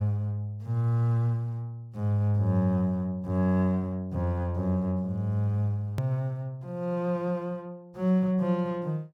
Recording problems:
hard cut with a click; at 6 s

